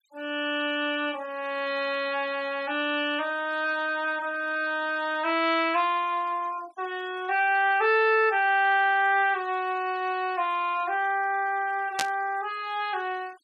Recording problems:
denoising artefacts; signal-to-artefact ratio 24 dB
burst of static; at 12 s; peak +3 dB vs average level

